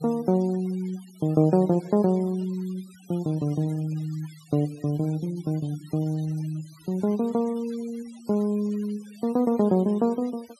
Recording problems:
noise reduction artefacts; signal-to-artefact ratio 24 dB

